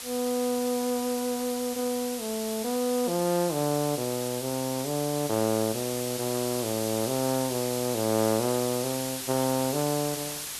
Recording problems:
background hiss; slope +2 dB per octave, SNR 6 dB

